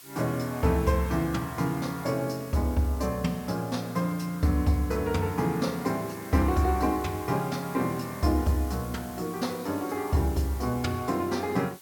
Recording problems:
hiss; slope +2 dB per octave, SNR 18 dB

